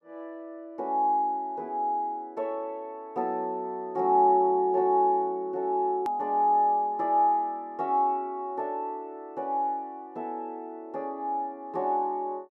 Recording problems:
hard cut with a click; at 6 s

